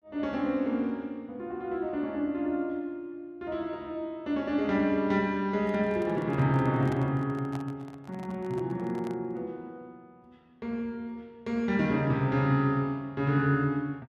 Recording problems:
handling noise; from 5.5 to 9.5 s; peak -7 dB vs average level

